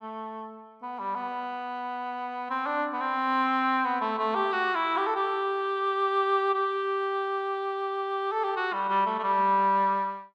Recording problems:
none

